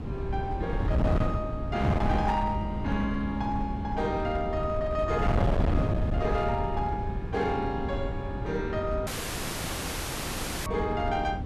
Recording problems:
distorted audio; hard clipping, uneven, signal-to-distortion ratio 12 dB
electrical hum; 60 Hz, harmonics up to 420 Hz, SNR 18 dB
wind on the microphone; below 210 Hz, SNR 1 dB
dropout; at 9 s for 1.5 s

